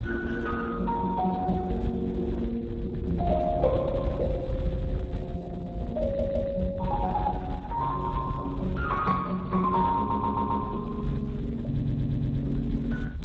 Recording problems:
lossy compression; Speex, log-spectral distance 2 dB
low-frequency rumble; below 120 Hz, SNR 8 dB
audio stuttering; at 6 s, at 10 s and at 12 s

